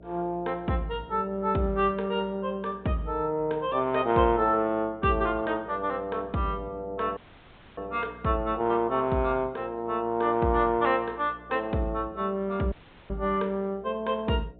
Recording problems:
treble cut off; nothing above 4 kHz
hum; 60 Hz, harmonics up to 720 Hz, SNR 23 dB
dropout; at 7 s for 0.5 s and at 13 s

